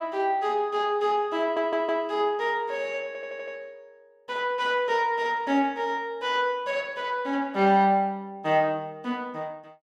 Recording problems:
audio stuttering; at 1.5 s and at 3 s

